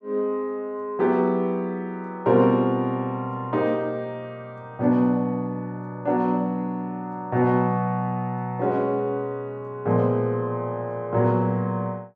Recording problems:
none

